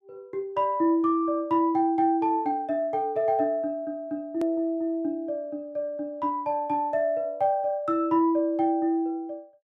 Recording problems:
hard cut with a click; at 4.5 s

